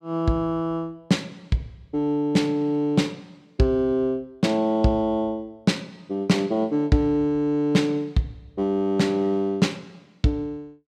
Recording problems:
none

